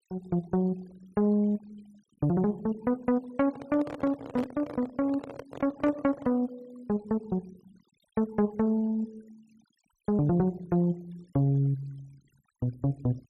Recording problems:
noise reduction artefacts; signal-to-artefact ratio 27 dB
handling noise; from 3.5 to 6.5 s; peak -5 dB vs average level

